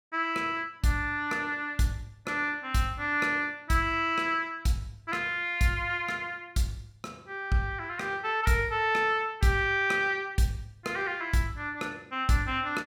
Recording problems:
none

